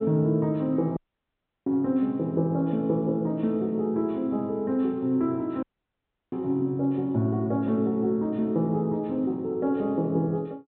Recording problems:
treble cut off; nothing above 4 kHz
audio cutting out; at 1 s for 0.5 s and at 5.5 s for 0.5 s

